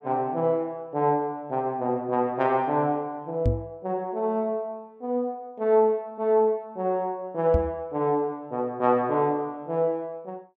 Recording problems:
knock on the microphone; at 3.5 s and at 7.5 s; peak +6 dB vs average level

